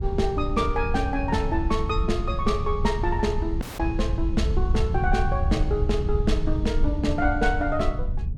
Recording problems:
rumble; below 80 Hz, SNR 1 dB
dropout; at 3.5 s

